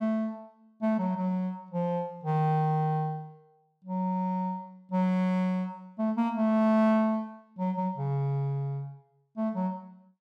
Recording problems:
none

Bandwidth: 14.5 kHz